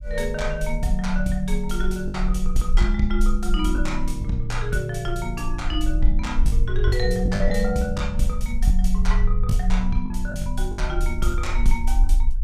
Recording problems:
rumble; below 42 Hz, strongest tone 20 Hz, SNR 0 dB
packet loss; 4% of the sound replaced, filled with the last packet

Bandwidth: 14.5 kHz